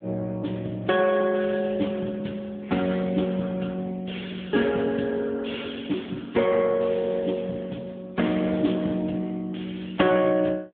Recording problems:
phone line; 130 Hz to 3.6 kHz, AMR-NB

